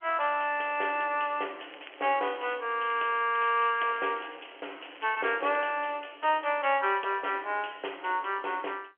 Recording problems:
telephone audio; 340 Hz to 3.3 kHz, G.711
crackle; from 1.5 to 4.5 s and at 5 s; loose cable, SNR 22 dB

